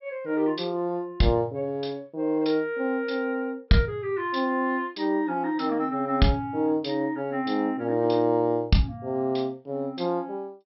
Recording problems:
low-pass filter; nothing above 5.5 kHz

